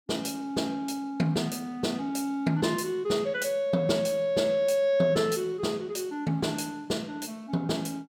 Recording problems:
none

